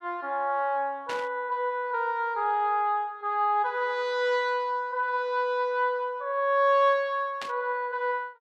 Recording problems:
burst of static; at 1 s and at 7.5 s; peak -6 dB vs average level

